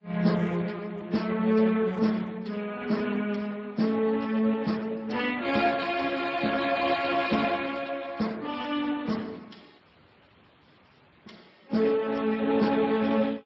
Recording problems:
codec artefacts; MP3, then Speex, log-spectral distance 6 dB
dropout; at 10 s for 1.5 s

